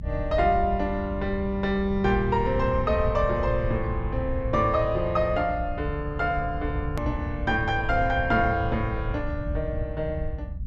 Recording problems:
treble missing; nothing above 8 kHz
rumble; below 92 Hz, SNR 7 dB
edit click; at 7 s

